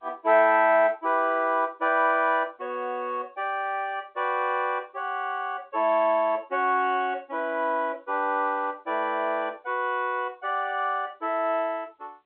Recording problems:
phone line; 260 Hz to 3.6 kHz, G.711

